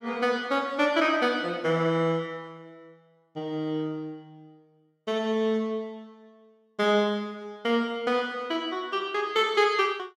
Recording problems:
none

